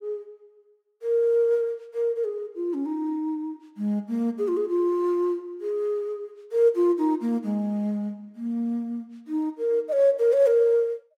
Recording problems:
none

